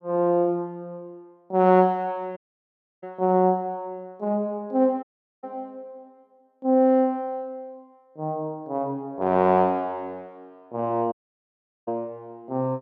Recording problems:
dropout; at 2.5 s for 0.5 s, at 5 s and at 11 s for 1 s

